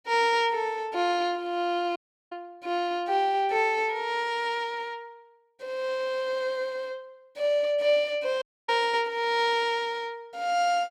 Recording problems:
audio cutting out; at 2 s and at 8.5 s

